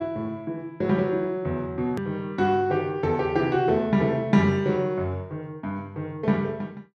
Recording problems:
hard cut with a click; at 2 s

